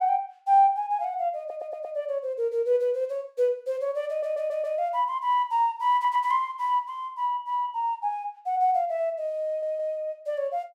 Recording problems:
stutter; 4 times, first at 1.5 s

